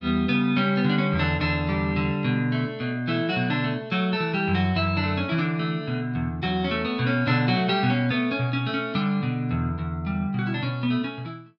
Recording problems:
none

